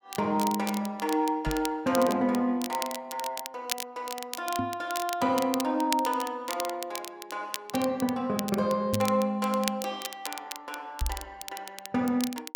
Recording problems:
crackling; vinyl, SNR 9 dB
knock on the microphone; 4 times, first at 1.5 s; peak +2 dB vs average level

